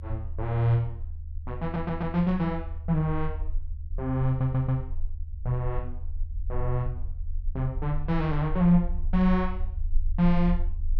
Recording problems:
low-frequency rumble; below 52 Hz, strongest tone 20 Hz, SNR 8 dB
audio stuttering; at 1.5 s and at 4.5 s

